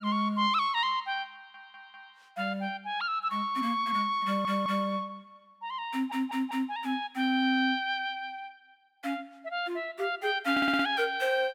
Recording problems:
audio stuttering; 4 times, first at 1.5 s

